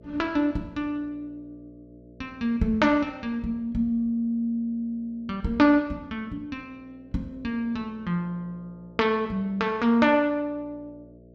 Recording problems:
hum; 60 Hz, harmonics up to 660 Hz, SNR 25 dB

